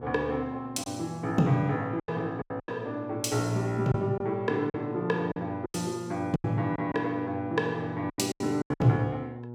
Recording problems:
hum; 60 Hz, harmonics up to 960 Hz, SNR 13 dB
lost packets; 9% of the sound replaced, filled with silence

